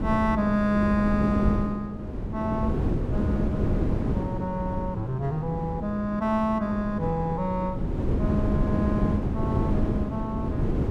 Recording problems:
wind on the microphone; below 300 Hz, SNR 1 dB

